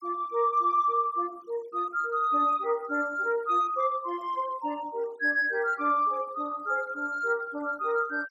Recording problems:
denoising artefacts; signal-to-artefact ratio 25 dB

